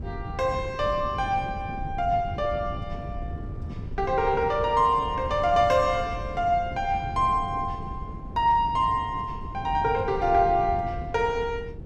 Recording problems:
wind noise; below 160 Hz, SNR 11 dB

